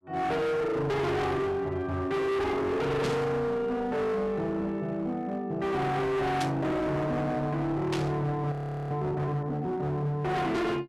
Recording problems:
distortion; hard clipping, signal-to-distortion ratio 6 dB
burst of static; at 3 s, at 6.5 s and at 8 s; peak -2 dB vs average level
audio freezing; at 8.5 s

